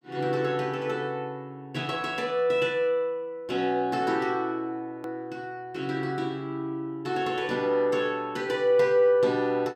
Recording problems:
edit click; at 5 s

